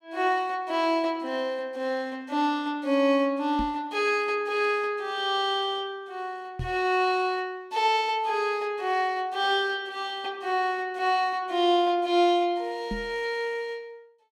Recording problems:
knock on the microphone; at 3.5 s, at 6.5 s and at 13 s; peak -3 dB vs average level

